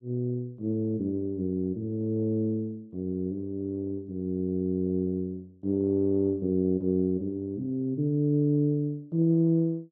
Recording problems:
none

